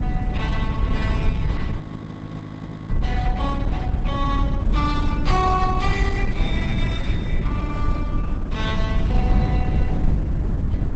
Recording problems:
codec artefacts; Opus, log-spectral distance 3 dB, nothing above 7.8 kHz
hum; 50 Hz, harmonics up to 300 Hz, SNR 4 dB
low-frequency rumble; below 140 Hz, SNR -4 dB
audio freezing; at 2 s for 1 s
burst of static; at 3.5 s, at 5 s and at 9 s; peak -13 dB vs average level

